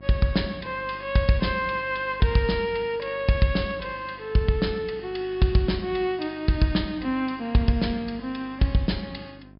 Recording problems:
treble missing; nothing above 5.5 kHz
hum; 50 Hz, harmonics up to 1 kHz, SNR 23 dB

